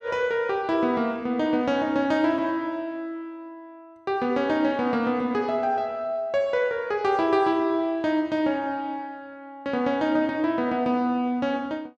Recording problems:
none

